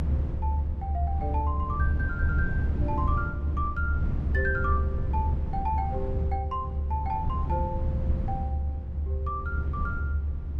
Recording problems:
low-frequency rumble; below 98 Hz, strongest tone 72 Hz, SNR -5 dB

